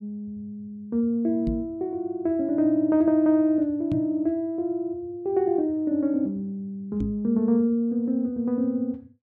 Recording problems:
microphone thump; at 1.5 s, at 4 s and at 7 s; peak -2 dB vs average level

